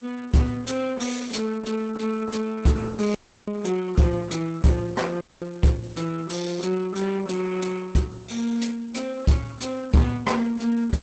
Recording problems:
lossy codec; Opus, log-spectral distance 5 dB, nothing above 8 kHz
distortion; hard clipping, signal-to-distortion ratio 12 dB
hiss; SNR 27 dB
audio cutting out; at 3 s and at 5 s

